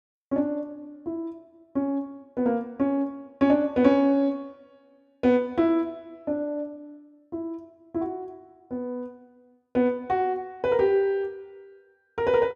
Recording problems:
none

